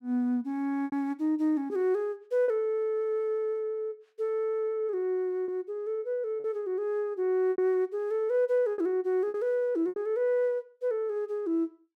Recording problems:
lost packets; 4% of the sound replaced, filled with repeated pitch periods

